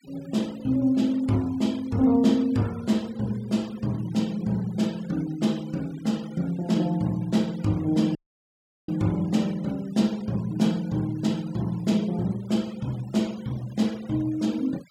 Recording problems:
noise reduction artefacts; signal-to-artefact ratio 23 dB
audio cutting out; at 8 s for 0.5 s

